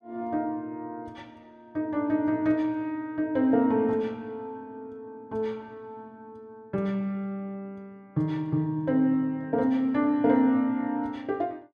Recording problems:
none

